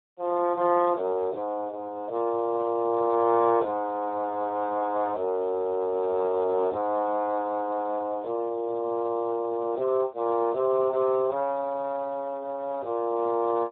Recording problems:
telephone audio; 320 Hz to 2.2 kHz, Speex

